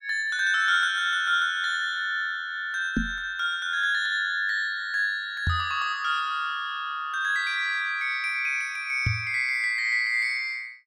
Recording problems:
microphone bump; at 3 s, at 5.5 s and at 9 s; peak +3 dB vs average level

